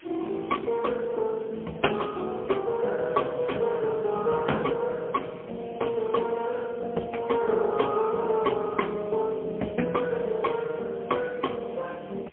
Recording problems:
phone line; 260 Hz to 3.3 kHz, AMR-NB, then MP3
background hiss; SNR 27 dB

